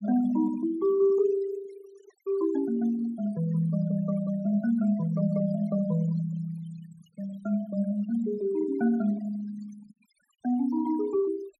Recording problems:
noise reduction artefacts; signal-to-artefact ratio 21 dB

